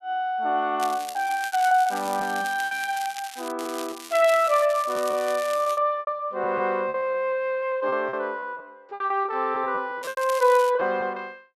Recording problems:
packet loss; 12% of the sound replaced, filled with repeated pitch periods
crackle; from 1 to 3.5 s, from 3.5 to 6 s and at 10 s; loose cable, SNR 14 dB

